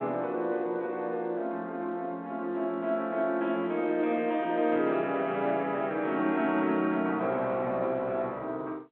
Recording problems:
telephone audio; 260 Hz to 3.5 kHz, G.711

